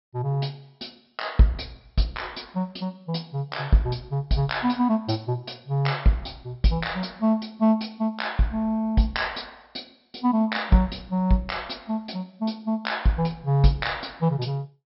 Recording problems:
low-pass filter; nothing above 5.4 kHz

